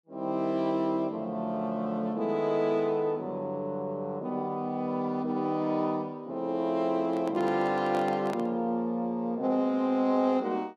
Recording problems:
microphone handling noise; from 7 to 8.5 s; peak -5 dB vs average level

